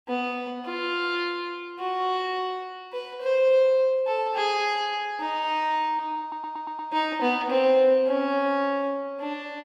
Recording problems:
stutter; at 6 s

